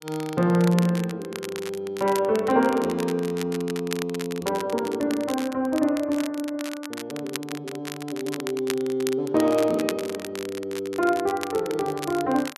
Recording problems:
crackling; vinyl, SNR 12 dB

